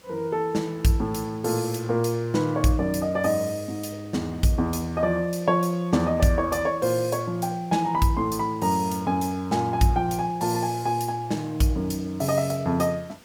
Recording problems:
background hiss; slope -3 dB per octave, SNR 27 dB

